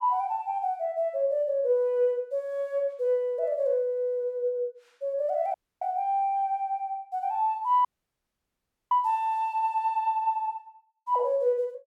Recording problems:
dropout; at 5.5 s and at 8 s for 1 s

